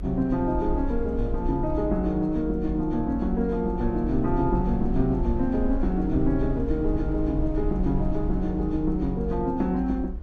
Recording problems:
low-frequency rumble; below 62 Hz, SNR 6 dB

